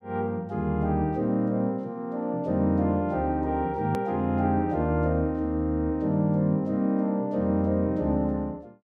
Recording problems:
hard cut with a click; at 4 s

